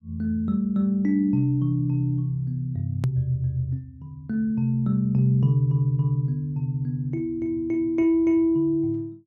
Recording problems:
edit click; at 3 s

